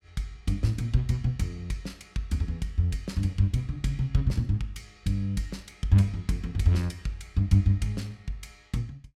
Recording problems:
none

